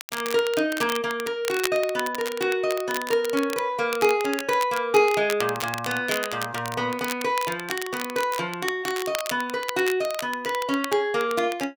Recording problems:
crackling; vinyl, SNR 10 dB

